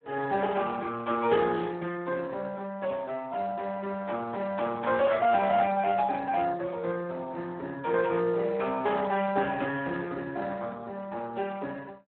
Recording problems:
telephone audio; 190 Hz to 2.8 kHz, Speex

